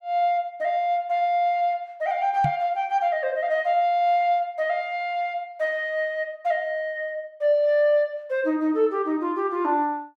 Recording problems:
microphone bump; at 2.5 s; peak 0 dB vs average level

